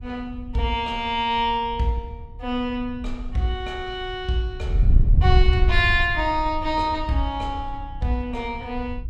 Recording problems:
wind noise; below 76 Hz, SNR 0 dB

